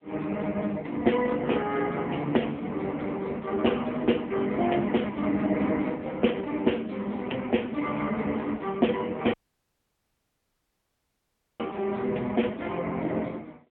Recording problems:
telephone audio; 220 Hz to 3.3 kHz, AMR-NB
audio cutting out; at 9.5 s for 2.5 s

